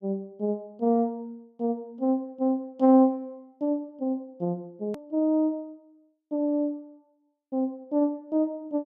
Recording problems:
edit click; at 5 s

